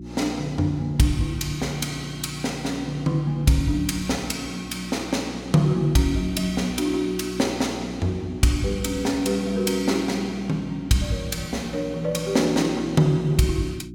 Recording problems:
hum; 60 Hz, harmonics up to 360 Hz, SNR 14 dB

